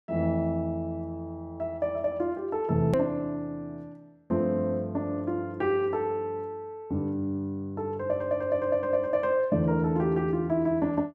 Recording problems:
hard cut with a click; at 3 s

